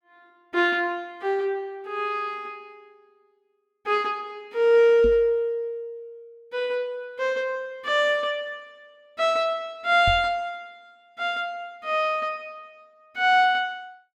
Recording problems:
microphone bump; at 5 s and at 10 s; peak -2 dB vs average level

